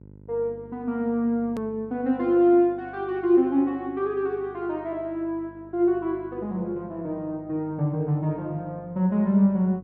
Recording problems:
electrical hum; 50 Hz, harmonics up to 600 Hz, SNR 23 dB
edit click; at 1.5 s

